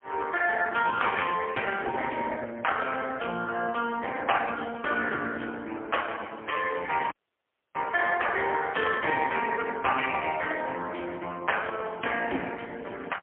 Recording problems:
telephone audio; 280 Hz to 3.1 kHz, AMR-NB, then MP3
dropout; at 7 s for 0.5 s

